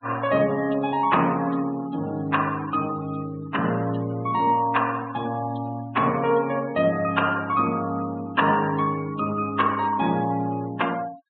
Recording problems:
treble cut off; nothing above 4 kHz
noise reduction artefacts; signal-to-artefact ratio 19 dB

